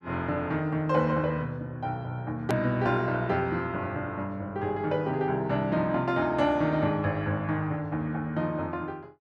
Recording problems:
hard cut with a click; at 2.5 s

